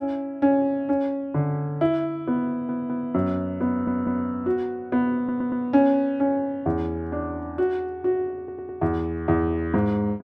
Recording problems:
audio stuttering; 4 times, first at 2.5 s

